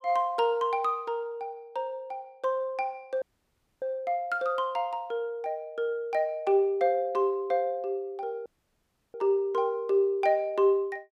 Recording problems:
dropout; at 3 s for 0.5 s and at 8.5 s for 0.5 s

